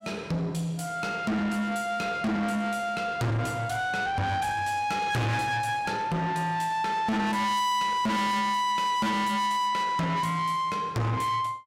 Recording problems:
distortion; soft clipping, signal-to-distortion ratio 6 dB

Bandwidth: 16 kHz